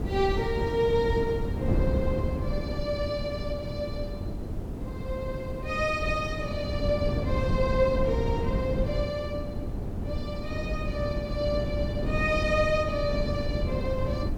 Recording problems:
hiss; slope -1 dB per octave, SNR 29 dB
wind noise; below 230 Hz, SNR 2 dB

